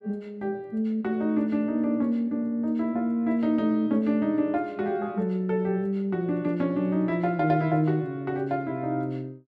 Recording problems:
none

